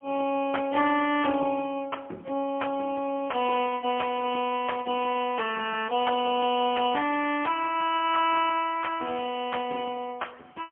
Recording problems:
telephone audio; 220 Hz to 3.2 kHz, AMR-NB, then MP3

